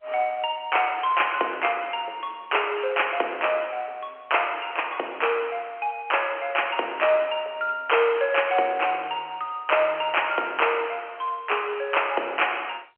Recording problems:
phone line; 320 Hz to 3.2 kHz, G.711

